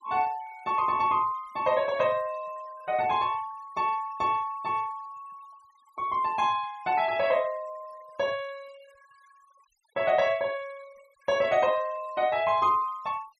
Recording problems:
noise reduction artefacts; signal-to-artefact ratio 24 dB

